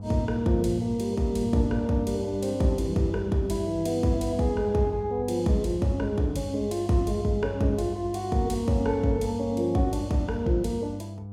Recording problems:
electrical hum; 50 Hz, harmonics up to 700 Hz, SNR 12 dB

